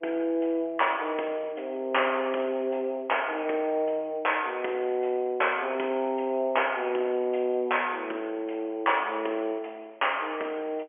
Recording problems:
telephone audio; 280 Hz to 3.1 kHz, G.711

